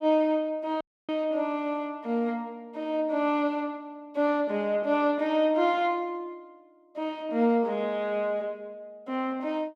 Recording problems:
dropout; at 1 s

